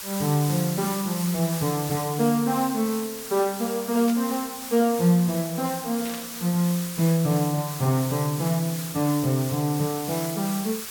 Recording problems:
background hiss; slope +1 dB per octave, SNR 9 dB
burst of static; at 4 s and at 6 s; peak -9 dB vs average level

